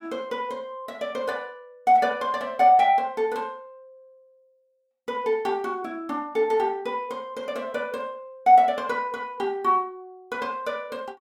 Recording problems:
none

